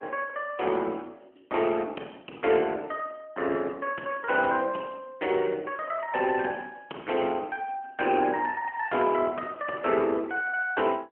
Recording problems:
telephone audio; 240 Hz to 3.2 kHz, AMR-NB

